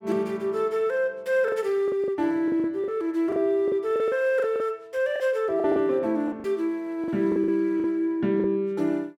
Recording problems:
packet loss; 10% of the sound replaced, filled with the last packet

